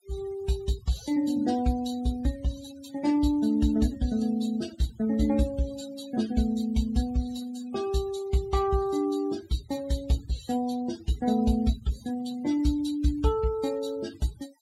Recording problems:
denoising artefacts; signal-to-artefact ratio 17 dB

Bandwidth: 16 kHz